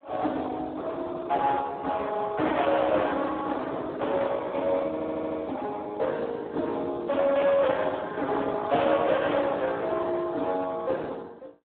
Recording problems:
telephone audio; 300 Hz to 2.8 kHz, Speex
distortion; hard clipping, signal-to-distortion ratio 9 dB
stutter; at 5 s

